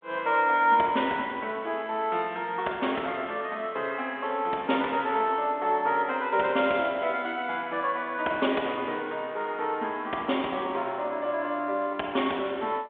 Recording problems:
phone line; 240 Hz to 3.6 kHz, G.726

